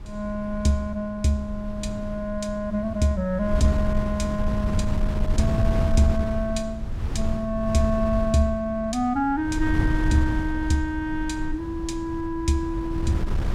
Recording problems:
wind on the microphone; below 110 Hz, SNR 4 dB

